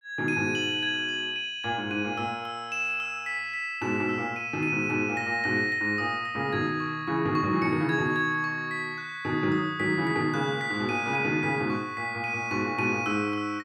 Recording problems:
none

